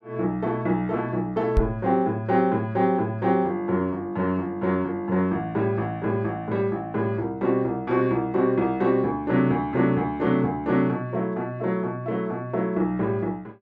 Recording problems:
microphone bump; at 1.5 s; peak +6 dB vs average level

